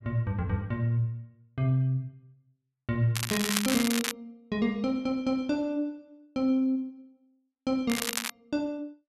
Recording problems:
crackling; at 3 s and at 8 s; loose cable, SNR 2 dB

